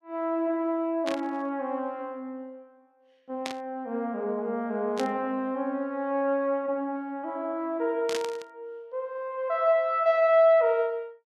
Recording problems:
burst of static; 4 times, first at 1 s; peak -2 dB vs average level

